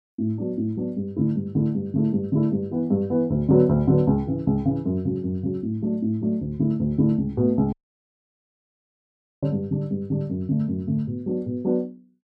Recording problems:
audio cutting out; at 7.5 s for 1.5 s

